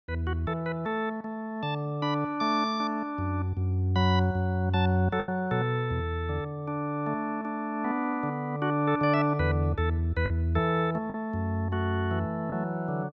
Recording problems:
lost packets; 1.4% of the sound replaced, filled with the last packet

